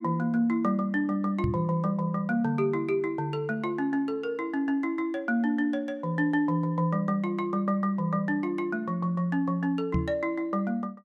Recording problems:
microphone bump; at 1.5 s and at 10 s; peak +3 dB vs average level

